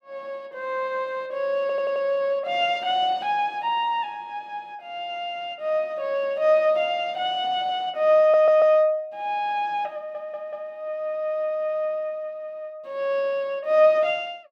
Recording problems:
stutter; at 1.5 s, at 8 s and at 10 s

